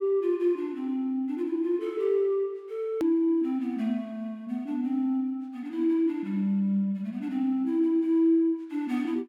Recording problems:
click at an edit; at 3 s

